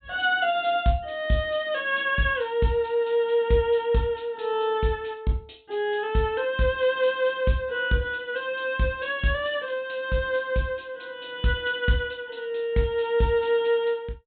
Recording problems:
treble cut off; nothing above 4 kHz

